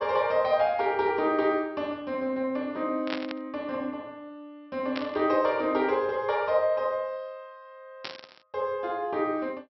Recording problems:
treble cut off; nothing above 5.6 kHz
static burst; at 3 s, at 5 s and at 8 s; peak -1 dB vs average level

